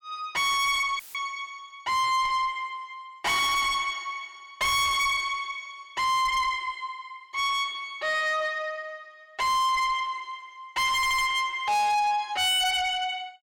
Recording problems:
distorted audio; soft clipping, signal-to-distortion ratio 6 dB
audio cutting out; at 1 s; filled with static
audio stuttering; at 11 s

